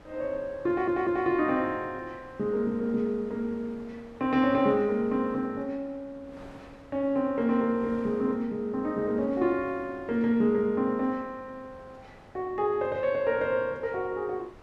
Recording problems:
wind noise; below 1.1 kHz, SNR 24 dB
stutter; at 0.5 s

